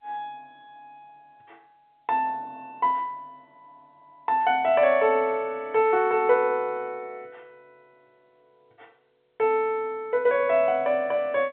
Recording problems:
phone line; 150 Hz to 3.6 kHz, G.711

